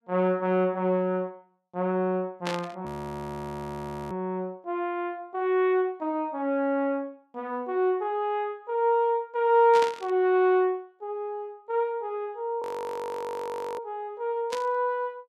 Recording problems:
burst of static; at 2.5 s, at 9.5 s and at 15 s; peak -2 dB vs average level
audio freezing; at 3 s for 1 s and at 13 s for 1 s

